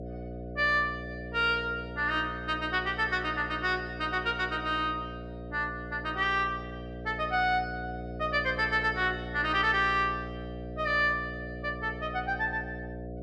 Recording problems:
electrical hum; 60 Hz, harmonics up to 720 Hz, SNR 11 dB

